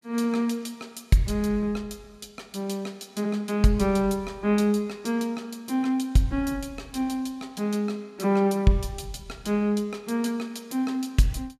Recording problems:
none

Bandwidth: 14.5 kHz